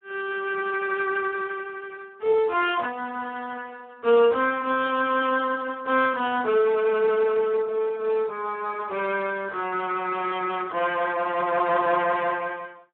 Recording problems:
phone line; 280 Hz to 3.8 kHz, Speex

